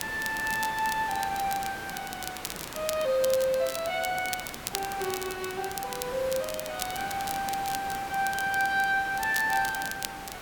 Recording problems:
hiss; slope -4 dB per octave, SNR 10 dB
crackle; vinyl, SNR 9 dB

